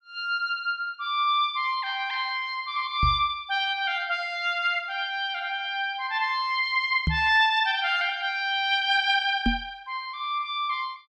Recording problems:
knock on the microphone; at 3 s, at 7 s and at 9.5 s; peak +4 dB vs average level

